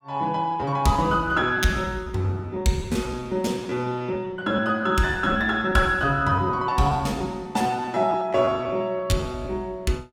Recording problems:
lost packets; 15% of the sound replaced, filled with repeated pitch periods

